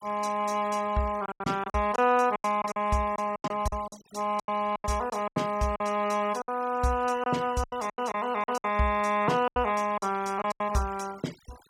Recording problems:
denoising artefacts; signal-to-artefact ratio 21 dB
lost packets; 13% of the sound replaced, filled with silence

